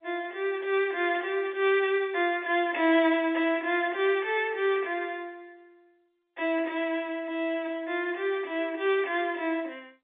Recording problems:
phone line; 260 Hz to 3.6 kHz, G.711

